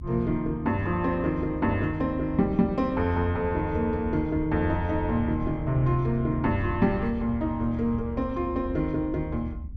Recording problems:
low-frequency rumble; below 88 Hz, SNR 10 dB

